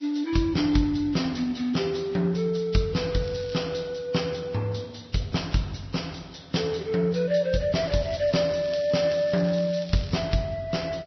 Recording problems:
treble cut off; nothing above 5.8 kHz
codec artefacts; Vorbis, log-spectral distance 5 dB
crackle; at 3 s and from 8 to 10 s; loose cable, SNR 18 dB

